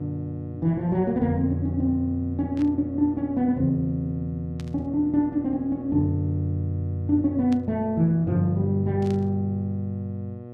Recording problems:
hum; 60 Hz, harmonics up to 1.2 kHz, SNR 15 dB
burst of static; 4 times, first at 2.5 s; peak -14 dB vs average level

